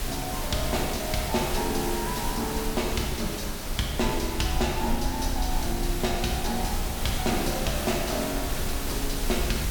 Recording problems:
background hiss; slope -3 dB per octave, SNR 4 dB
low-frequency rumble; below 58 Hz, SNR 7 dB

